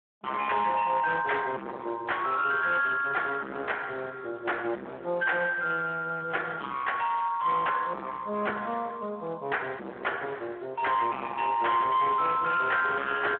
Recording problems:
phone line; 240 Hz to 3.4 kHz, Speex
distortion; hard clipping, uneven, signal-to-distortion ratio 6 dB

